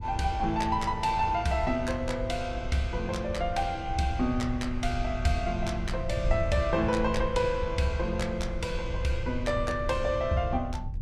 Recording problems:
wind on the microphone; below 88 Hz, SNR 7 dB

